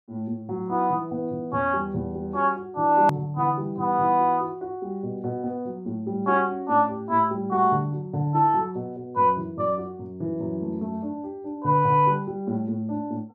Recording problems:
hard cut with a click; at 3 s

